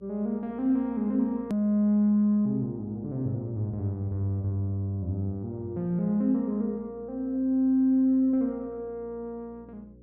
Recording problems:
hum; 60 Hz, harmonics up to 540 Hz, SNR 27 dB
hard cut with a click; at 1.5 s

